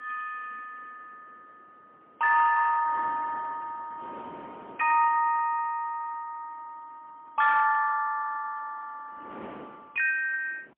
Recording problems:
telephone audio; 410 Hz to 2.7 kHz, AMR-NB, then MP3
wind on the microphone; below 950 Hz, SNR 22 dB

